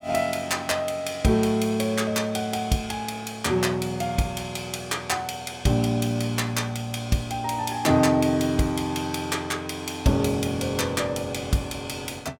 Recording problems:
none

